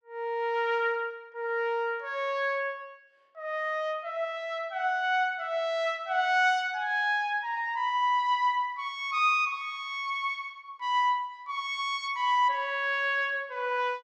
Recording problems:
none

